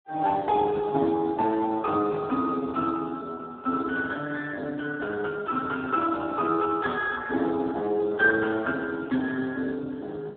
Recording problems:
telephone audio; 220 Hz to 2.5 kHz, Speex

